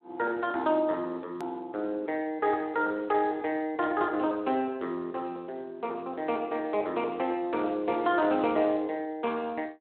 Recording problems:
telephone audio; 260 Hz to 3.8 kHz, Speex
click at an edit; at 1.5 s

